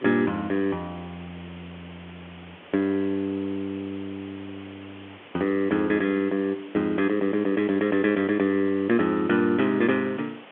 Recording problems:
phone line; 240 Hz to 3.5 kHz, G.711
background hiss; SNR 21 dB

